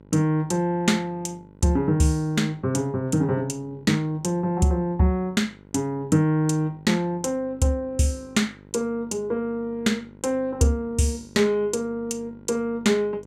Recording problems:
electrical hum; 50 Hz, harmonics up to 1.5 kHz, SNR 24 dB

